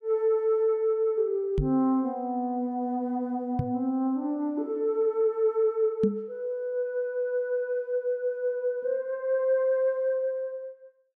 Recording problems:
microphone thump; at 1.5 s, at 3.5 s and at 6 s; peak +4 dB vs average level

